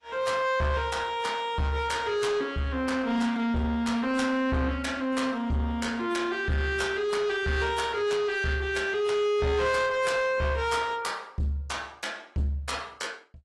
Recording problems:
lossy codec; AAC, log-spectral distance 2 dB, nothing above 11.3 kHz
distortion; soft clipping, signal-to-distortion ratio 11 dB

